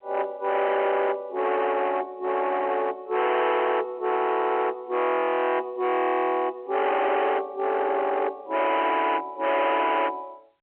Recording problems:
telephone audio; 990 Hz to 3.4 kHz, G.711
distortion; hard clipping, signal-to-distortion ratio 7 dB

